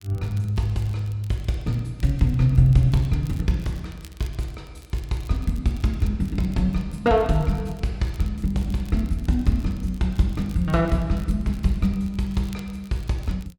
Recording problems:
crackling; vinyl, SNR 27 dB

